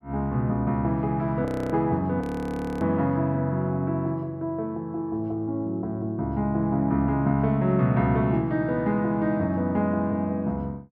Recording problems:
frozen audio; at 1.5 s and at 2 s for 0.5 s

